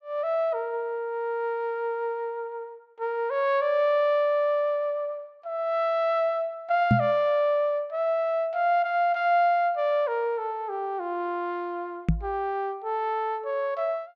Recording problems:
knock on the microphone; at 7 s and at 12 s; peak +8 dB vs average level

